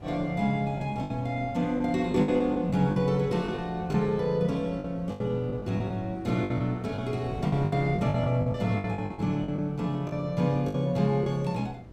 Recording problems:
wind noise; below 330 Hz, SNR 16 dB
lost packets; 11% of the sound replaced, filled with the last packet

